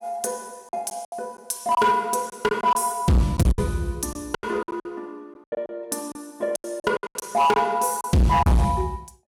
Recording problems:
distortion; hard clipping, signal-to-distortion ratio 7 dB
packet loss; 12% of the sound replaced, filled with silence

